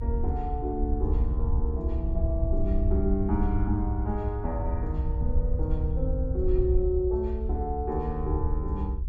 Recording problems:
low-frequency rumble; below 70 Hz, SNR -2 dB

